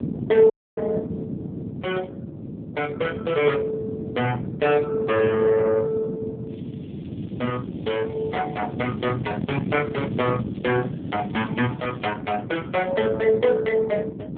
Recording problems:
telephone audio; 190 Hz to 3.6 kHz, AMR-NB
wind on the microphone; below 310 Hz, SNR 8 dB
dropout; at 0.5 s
crackle; from 6.5 to 12 s; loose cable, SNR 29 dB

